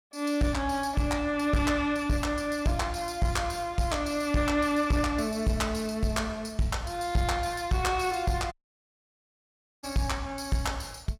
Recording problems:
distortion; soft clipping, signal-to-distortion ratio 12 dB
audio cutting out; at 8.5 s for 1.5 s

